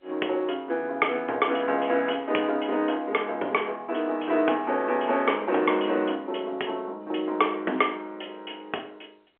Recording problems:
telephone audio; 300 Hz to 3.3 kHz, G.711

